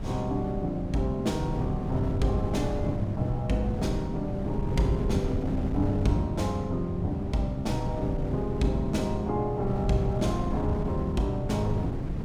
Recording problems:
wind on the microphone; below 220 Hz, SNR 4 dB

